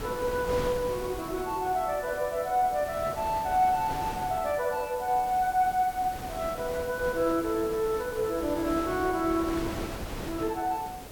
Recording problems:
background hiss; SNR 18 dB
wind on the microphone; below 1.1 kHz, SNR 11 dB

